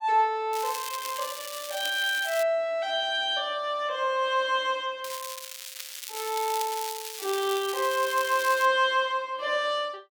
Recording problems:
crackling; from 0.5 to 2.5 s and from 5 to 8.5 s; loose cable, SNR 9 dB

